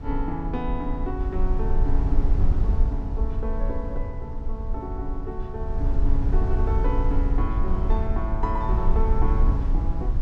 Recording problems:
low-frequency rumble; below 58 Hz, SNR -5 dB

